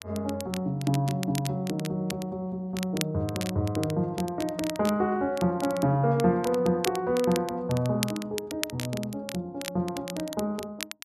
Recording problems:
crackle; vinyl, SNR 11 dB

